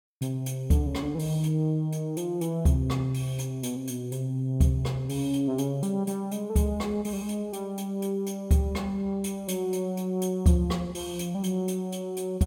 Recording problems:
none

